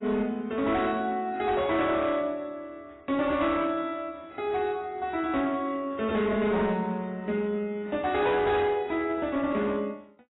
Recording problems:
codec artefacts; AAC, log-spectral distance 2 dB, nothing above 3.8 kHz
distortion; hard clipping, signal-to-distortion ratio 12 dB

